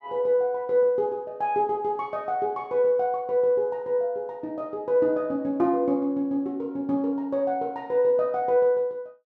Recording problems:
none

